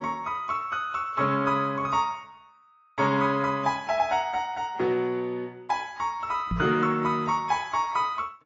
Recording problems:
lossy compression; AAC, log-spectral distance 2 dB, nothing above 6 kHz
microphone thump; at 6.5 s; peak 0 dB vs average level

